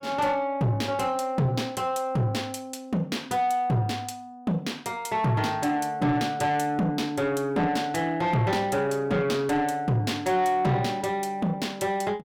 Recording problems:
distorted audio; soft clipping, signal-to-distortion ratio 11 dB

